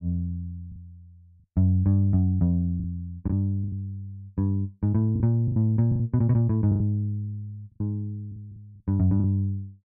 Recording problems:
packet loss; 8% of the sound replaced, filled with the last packet

